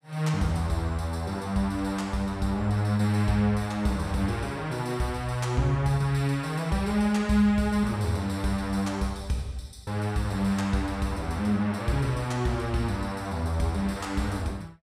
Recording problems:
none

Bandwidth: 15.5 kHz